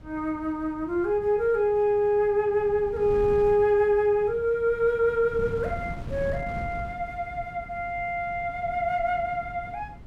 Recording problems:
wind noise; below 200 Hz, SNR 16 dB

